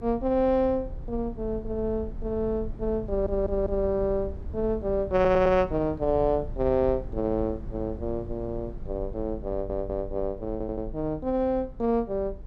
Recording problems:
low-frequency rumble; below 86 Hz, SNR 12 dB
stutter; 4 times, first at 3 s

